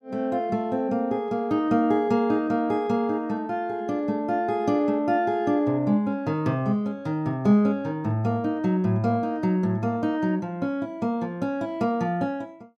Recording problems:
none

